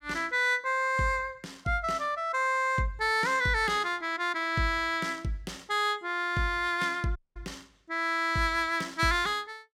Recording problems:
audio cutting out; at 7 s

